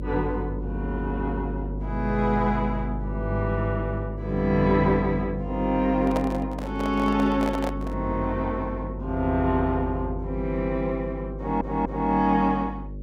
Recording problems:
hum; 50 Hz, harmonics up to 550 Hz, SNR 7 dB
microphone handling noise; from 6 to 8 s; peak -1 dB vs average level
stutter; at 11 s

